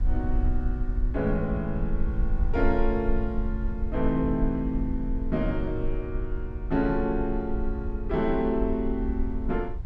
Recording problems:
rumble; below 54 Hz, SNR 3 dB

